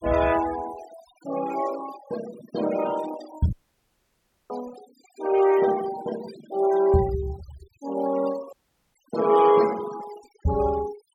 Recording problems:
denoising artefacts; signal-to-artefact ratio 15 dB
audio cutting out; at 3.5 s for 1 s and at 8.5 s

